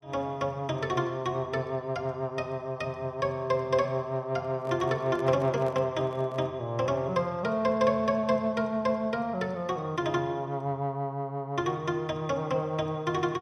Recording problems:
handling noise; from 4.5 to 6.5 s; peak -9 dB vs average level

